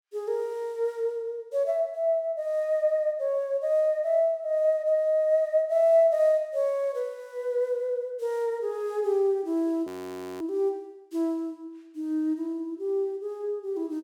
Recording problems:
frozen audio; at 10 s for 0.5 s

